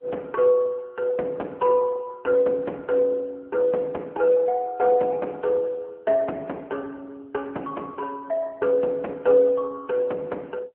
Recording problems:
telephone audio; 240 Hz to 2.8 kHz, AMR-NB

